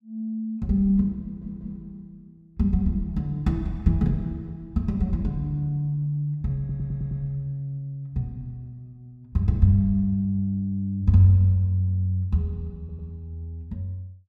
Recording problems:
stutter; at 1 s, at 6.5 s and at 13 s

